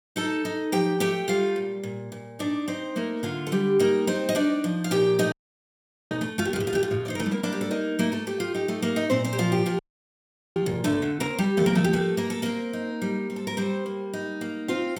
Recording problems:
frozen audio; at 5.5 s for 1 s and at 10 s for 1 s

